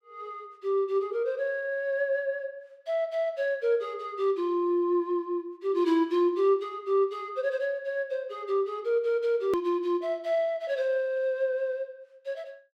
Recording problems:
edit click; at 9.5 s

